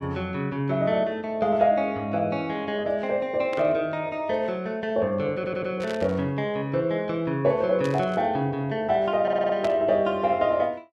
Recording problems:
static burst; 4 times, first at 3.5 s; peak -7 dB vs average level
audio stuttering; at 5.5 s and at 9 s

